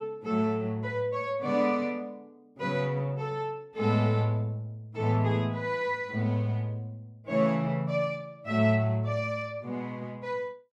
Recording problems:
none

